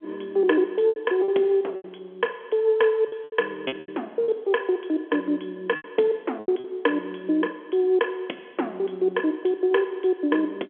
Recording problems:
phone line; 260 Hz to 3.4 kHz, G.711
packet loss; 6% of the sound replaced, filled with repeated pitch periods

